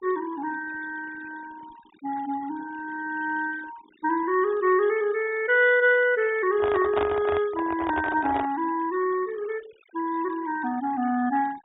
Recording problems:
low-pass filter; nothing above 4 kHz
noise reduction artefacts; signal-to-artefact ratio 21 dB
handling noise; from 6.5 to 8.5 s; peak +1 dB vs average level

